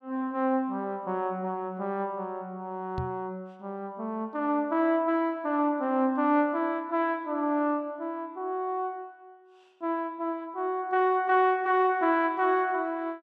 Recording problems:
microphone thump; at 3 s; peak -2 dB vs average level

